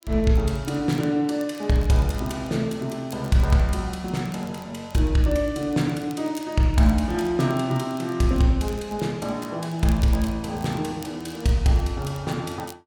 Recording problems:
crackle; vinyl, SNR 25 dB

